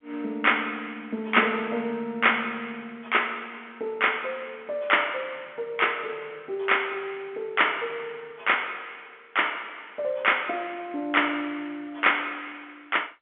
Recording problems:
telephone audio; 170 Hz to 3.4 kHz, G.711

